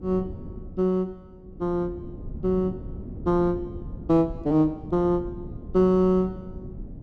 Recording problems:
wind on the microphone; below 210 Hz, SNR 14 dB

